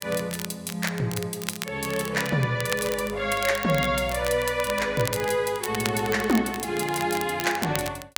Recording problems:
crackling; vinyl, SNR 10 dB

